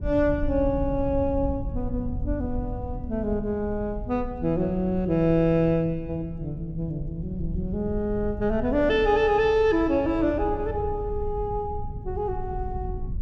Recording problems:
low-frequency rumble; below 100 Hz, SNR 10 dB

